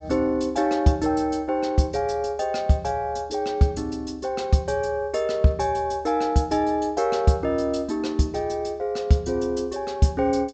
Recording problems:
treble cut off; nothing above 8 kHz

